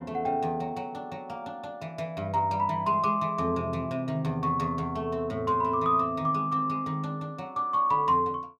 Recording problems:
none

